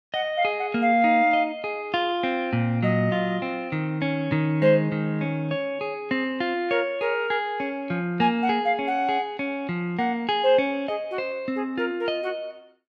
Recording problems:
none

